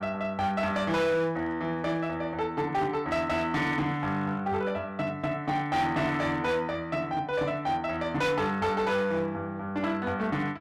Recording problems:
distorted audio; hard clipping, uneven, signal-to-distortion ratio 12 dB

